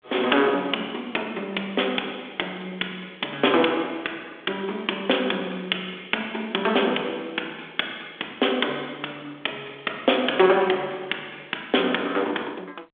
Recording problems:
phone line; 300 Hz to 4 kHz, G.726

